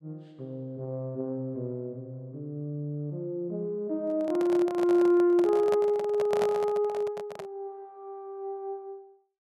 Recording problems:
microphone handling noise; from 4 to 7.5 s; peak 0 dB vs average level

